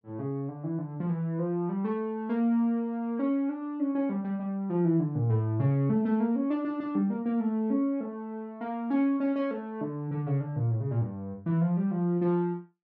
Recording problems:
none

